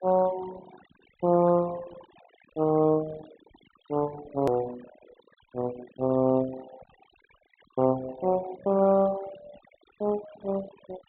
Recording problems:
treble missing; nothing above 4 kHz
noise reduction artefacts; signal-to-artefact ratio 18 dB
click at an edit; at 4.5 s

